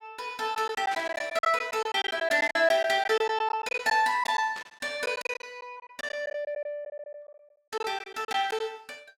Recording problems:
lost packets; 13% of the sound replaced, filled with silence
burst of static; at 1 s, at 2.5 s and at 4.5 s; peak -8 dB vs average level

